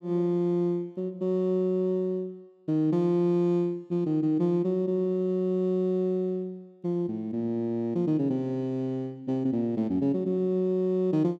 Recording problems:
none

